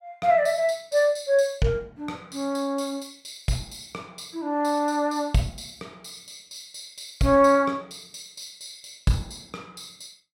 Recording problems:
none

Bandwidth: 16.5 kHz